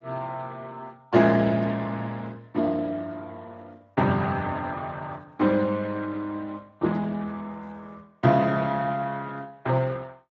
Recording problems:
codec artefacts; Speex, log-spectral distance 3 dB

